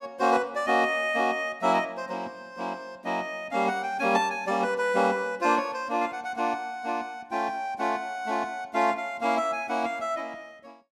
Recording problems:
none

